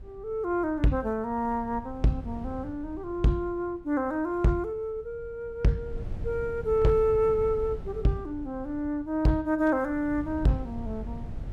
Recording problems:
distortion; hard clipping, signal-to-distortion ratio 11 dB
wind on the microphone; below 120 Hz, SNR 14 dB

